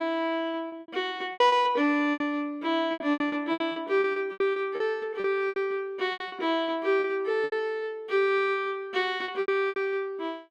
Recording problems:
packet loss; 14% of the sound replaced, filled with repeated pitch periods

